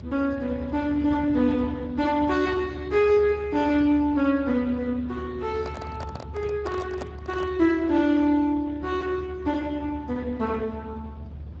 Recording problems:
codec artefacts; Speex, log-spectral distance 3 dB
rumble; below 140 Hz, strongest tone 74 Hz, SNR 14 dB
microphone handling noise; from 5.5 to 7.5 s; peak -7 dB vs average level

